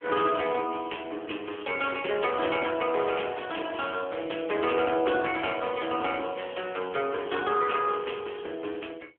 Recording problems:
telephone audio; 300 Hz to 3.3 kHz, AMR-NB

